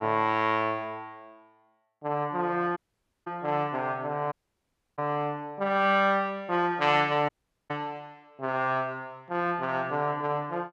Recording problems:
audio cutting out; at 3 s, at 4.5 s for 0.5 s and at 7.5 s

